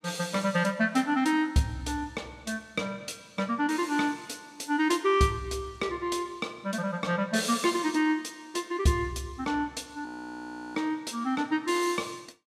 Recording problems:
audio freezing; at 10 s for 0.5 s

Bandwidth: 14.5 kHz